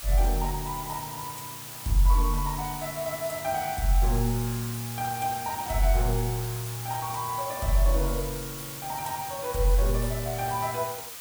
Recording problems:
background hiss; SNR 8 dB

